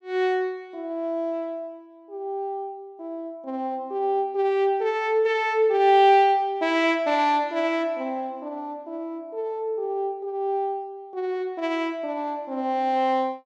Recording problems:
none

